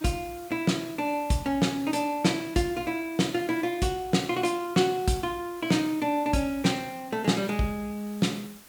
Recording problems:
background hiss; slope -1 dB per octave, SNR 20 dB

